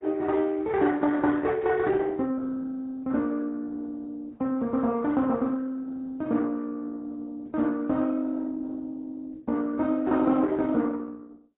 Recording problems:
lossy compression; Opus, then AAC, log-spectral distance 3 dB, nothing above 10.7 kHz

